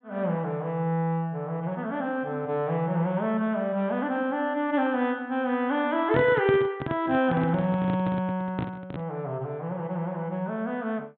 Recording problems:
treble missing; nothing above 4 kHz
handling noise; from 6 to 9 s; peak +3 dB vs average level

